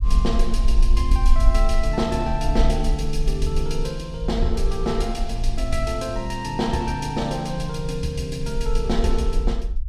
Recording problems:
low-frequency rumble; below 46 Hz, SNR 0 dB

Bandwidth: 14 kHz